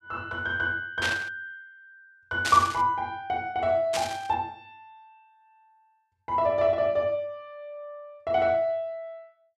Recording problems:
burst of static; at 1 s, at 2.5 s and at 4 s; peak +2 dB vs average level

